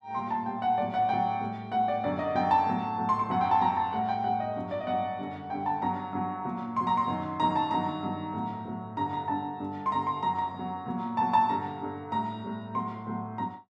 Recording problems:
none

